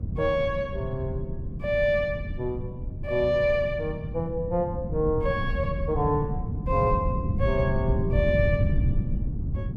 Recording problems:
wind on the microphone; below 150 Hz, SNR 3 dB

